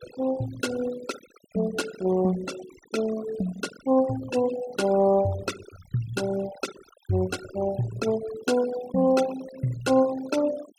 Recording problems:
noise reduction artefacts; signal-to-artefact ratio 14 dB

